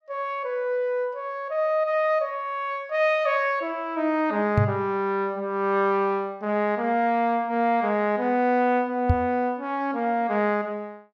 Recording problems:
knock on the microphone; at 4.5 s and at 9 s; peak +7 dB vs average level

